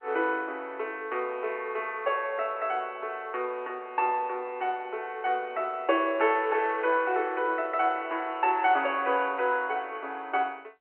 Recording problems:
telephone audio; 300 Hz to 3.1 kHz, G.711

